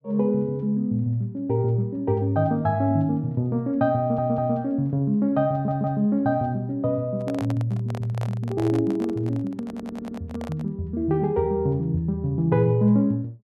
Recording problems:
stutter; at 4 s, at 5.5 s and at 9.5 s
handling noise; from 7 to 11 s; peak -7 dB vs average level

